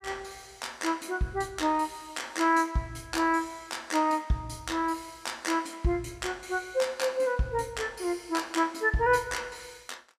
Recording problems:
none

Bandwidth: 15 kHz